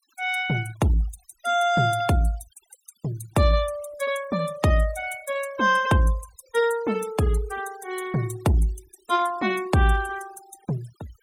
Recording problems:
noise reduction artefacts; signal-to-artefact ratio 19 dB

